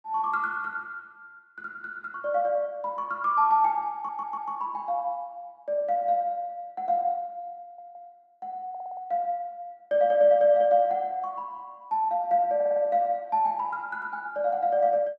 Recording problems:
audio stuttering; 4 times, first at 4 s

